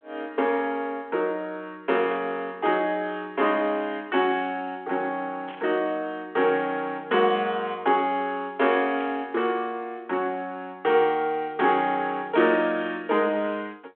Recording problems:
telephone audio; 280 Hz to 3.4 kHz, G.726
burst of static; at 2 s, at 5.5 s and at 9 s; peak -13 dB vs average level

